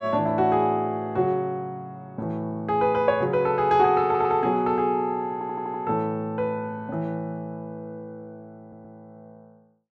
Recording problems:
stutter; at 4 s, at 5.5 s and at 8.5 s

